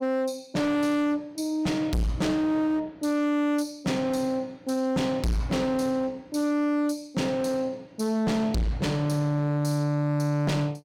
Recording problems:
distorted audio; hard clipping, signal-to-distortion ratio 6 dB

